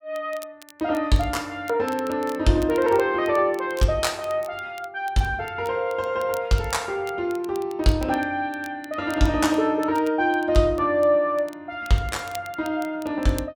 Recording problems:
crackle; vinyl, SNR 23 dB

